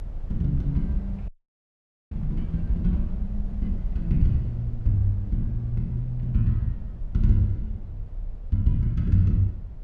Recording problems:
rumble; below 58 Hz, SNR 9 dB
frozen audio; at 1.5 s for 1 s

